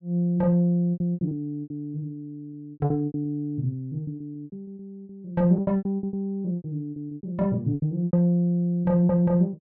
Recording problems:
lost packets; 17% of the sound replaced, filled with repeated pitch periods

